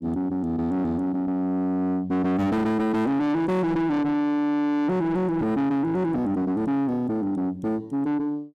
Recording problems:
distorted audio; soft clipping, signal-to-distortion ratio 7 dB

